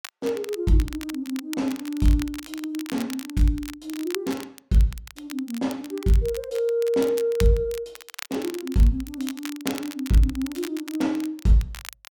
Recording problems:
crackle; vinyl, SNR 14 dB

